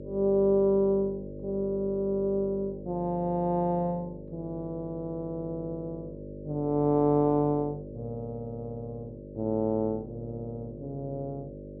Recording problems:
treble cut off; nothing above 4.1 kHz
mains hum; 50 Hz, harmonics up to 600 Hz, SNR 13 dB

